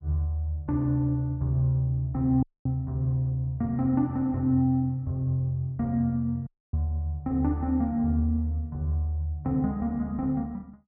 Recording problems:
dropout; at 2.5 s and at 6.5 s

